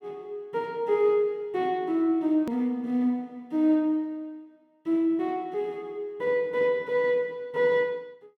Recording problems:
click at an edit; at 2.5 s

